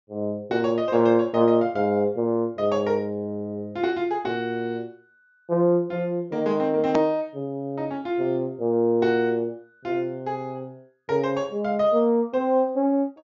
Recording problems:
low-pass filter; nothing above 7.2 kHz
hard cut with a click; at 7 s

